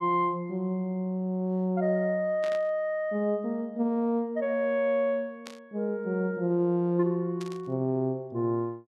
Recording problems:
burst of static; at 2.5 s, at 5.5 s and at 7.5 s; peak -10 dB vs average level

